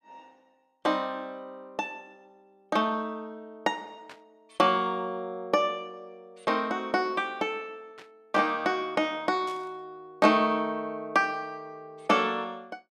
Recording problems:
static burst; at 4 s, at 8 s and at 9.5 s; peak -14 dB vs average level

